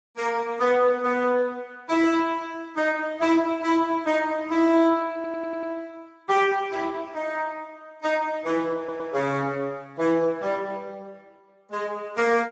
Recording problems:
codec artefacts; Speex, log-spectral distance 3 dB, nothing above 7.3 kHz
audio stuttering; at 5 s and at 9 s

